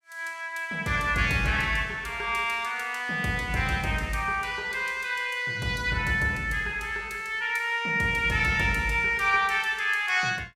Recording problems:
none

